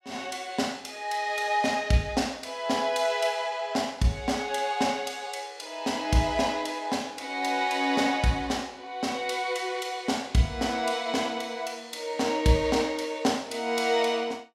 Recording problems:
none

